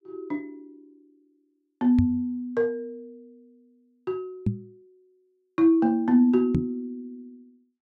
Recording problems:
microphone thump; at 2 s, at 4.5 s and at 6.5 s; peak +4 dB vs average level

